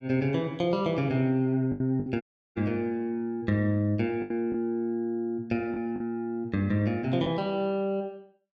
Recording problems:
packet loss; 4% of the sound replaced, filled with the last packet
audio cutting out; at 2 s

